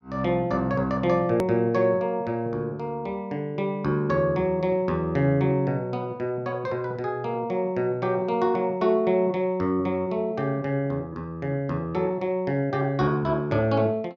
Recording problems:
edit click; at 1.5 s

